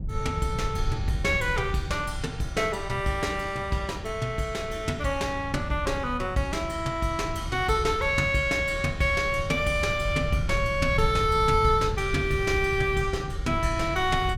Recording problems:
wind on the microphone; below 120 Hz, SNR 8 dB

